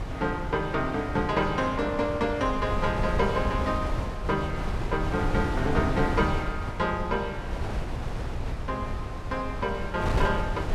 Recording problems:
wind on the microphone; below 260 Hz, SNR 4 dB

